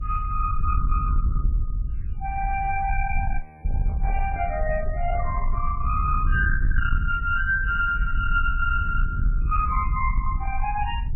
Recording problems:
codec artefacts; AAC, then MP3, log-spectral distance 2 dB, nothing above 2.4 kHz
distortion; soft clipping, signal-to-distortion ratio 11 dB
rumble; below 68 Hz, SNR 2 dB
audio freezing; at 3.5 s
microphone handling noise; from 3.5 to 5.5 s; peak -11 dB vs average level

